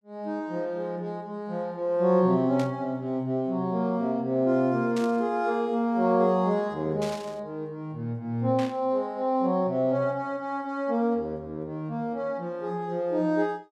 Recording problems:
static burst; 4 times, first at 2.5 s; peak -8 dB vs average level

